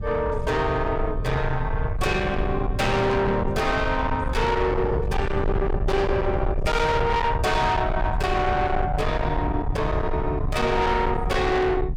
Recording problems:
distortion; soft clipping, signal-to-distortion ratio 7 dB
rumble; below 370 Hz, SNR 4 dB

